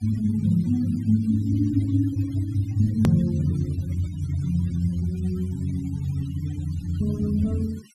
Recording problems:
noise reduction artefacts; signal-to-artefact ratio 24 dB
edit click; at 3 s

